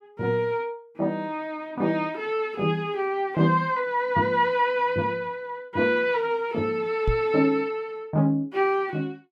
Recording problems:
microphone bump; at 7 s; peak +3 dB vs average level

